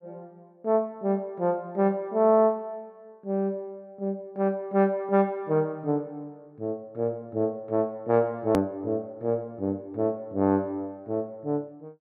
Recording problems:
hard cut with a click; at 8.5 s

